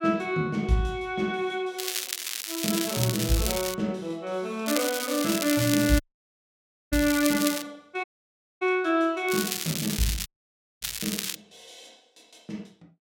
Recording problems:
crackling; from 2 to 3.5 s, from 4.5 to 7.5 s and from 9.5 to 11 s; loose cable, SNR 3 dB
dropout; at 6 s for 1 s, at 8 s for 0.5 s and at 10 s for 0.5 s

